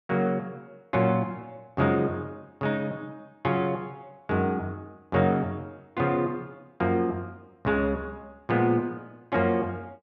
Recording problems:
none

